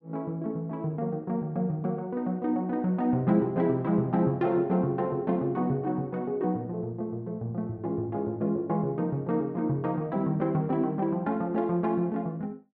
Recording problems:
none

